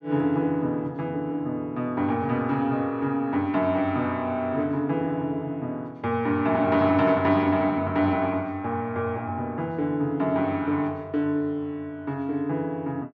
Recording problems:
none

